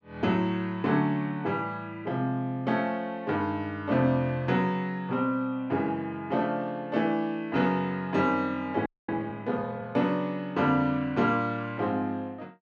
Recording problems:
frozen audio; at 9 s

